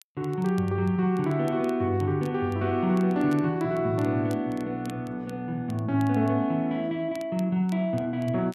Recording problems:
crackle; vinyl, SNR 27 dB

